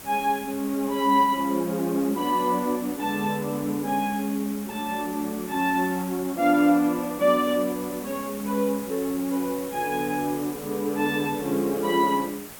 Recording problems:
background hiss; slope -2 dB per octave, SNR 14 dB

